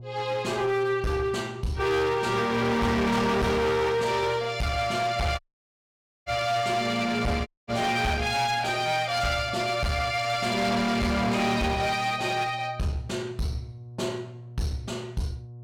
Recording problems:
distortion; hard clipping, uneven, signal-to-distortion ratio 6 dB
electrical hum; 60 Hz, harmonics up to 720 Hz, SNR 16 dB
dropout; at 5.5 s for 1 s and at 7.5 s

